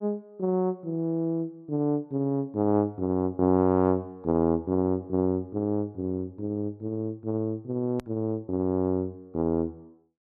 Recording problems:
edit click; at 8 s

